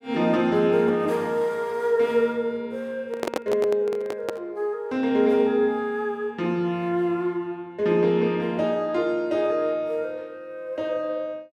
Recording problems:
microphone handling noise; from 3 to 4.5 s; peak +2 dB vs average level

